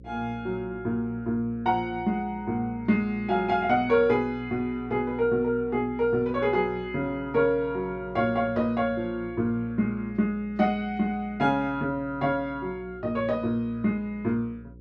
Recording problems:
mains hum; 60 Hz, harmonics up to 540 Hz, SNR 20 dB

